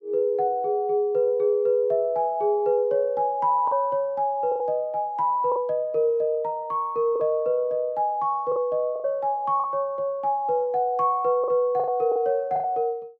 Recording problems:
packet loss; 5% of the sound replaced, filled with the last packet

